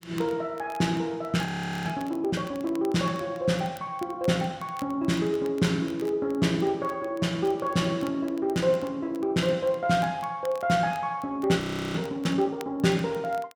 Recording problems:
crackle; vinyl, SNR 24 dB
audio freezing; at 1.5 s and at 12 s

